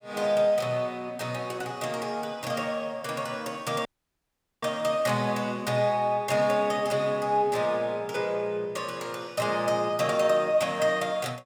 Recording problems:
audio cutting out; at 4 s for 1 s

